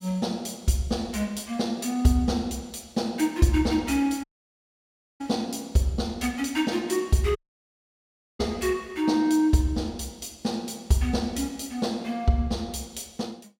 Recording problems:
dropout; at 4 s for 1 s and at 7.5 s for 1 s

